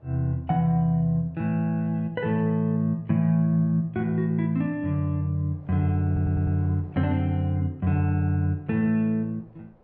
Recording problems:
wind noise; below 650 Hz, SNR 29 dB
audio stuttering; at 6 s

